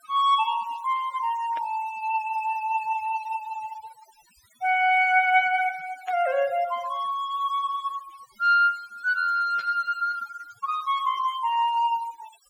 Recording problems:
denoising artefacts; signal-to-artefact ratio 22 dB
burst of static; at 1.5 s, at 6 s and at 9.5 s; peak -14 dB vs average level

